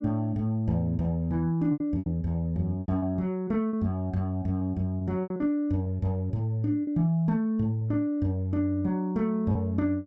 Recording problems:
lost packets; 7% of the sound replaced, filled with repeated pitch periods

